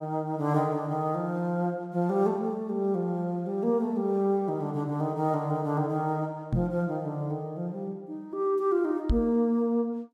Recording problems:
microphone bump; at 6.5 s and at 9 s; peak +5 dB vs average level

